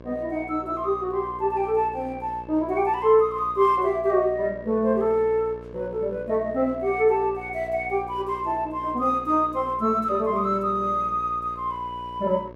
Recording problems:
hum; 60 Hz, harmonics up to 1.7 kHz, SNR 18 dB

